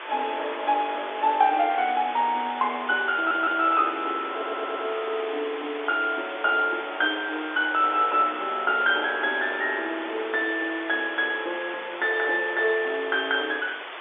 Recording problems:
telephone audio; 300 Hz to 3.6 kHz, G.711
background hiss; SNR 11 dB
stutter; at 3 s and at 4.5 s

